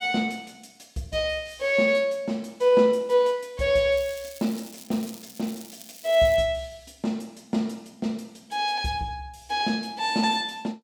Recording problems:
crackle; from 4 to 6.5 s; loose cable, SNR 19 dB

